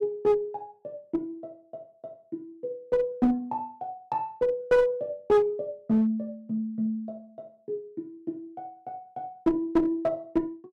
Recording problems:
distortion; hard clipping, uneven, signal-to-distortion ratio 10 dB

